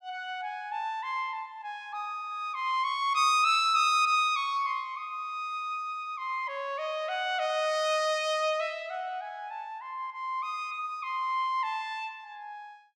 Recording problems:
none

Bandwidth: 14.5 kHz